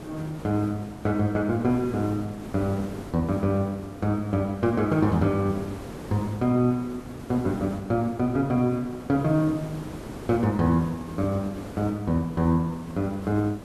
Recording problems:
background hiss; slope -7 dB per octave, SNR 14 dB

